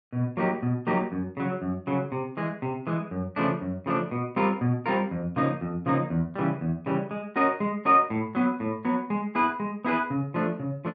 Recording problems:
none

